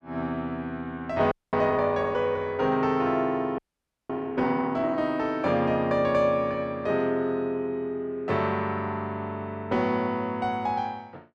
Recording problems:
audio freezing; at 1.5 s and at 3.5 s for 0.5 s

